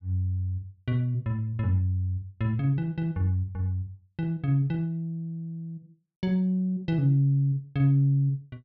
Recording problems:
none

